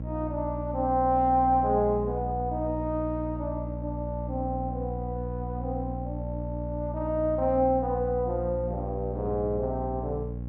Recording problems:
hum; 60 Hz, harmonics up to 540 Hz, SNR 6 dB

